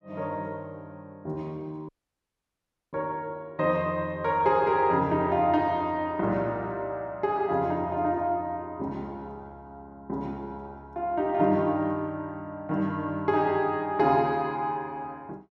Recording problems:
dropout; at 2 s for 1 s

